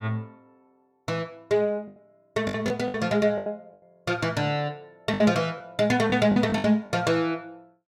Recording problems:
lost packets; 9% of the sound replaced, filled with the last packet

